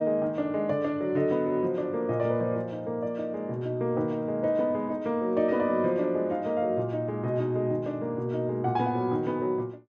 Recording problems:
none

